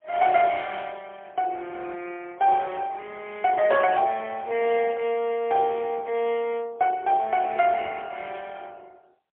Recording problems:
telephone audio; 280 Hz to 3.4 kHz, AMR-NB, then MP3

